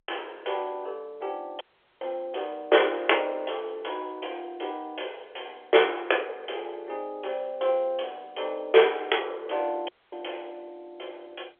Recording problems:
telephone audio; 320 Hz to 3.5 kHz, G.711
audio cutting out; at 1.5 s and at 10 s

